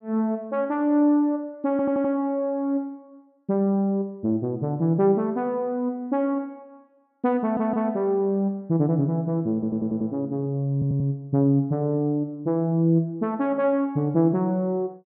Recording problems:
audio stuttering; 4 times, first at 1.5 s

